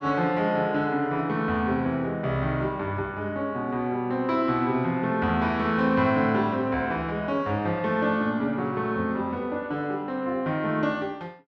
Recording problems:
none

